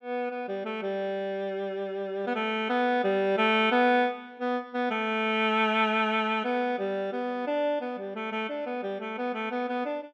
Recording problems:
none

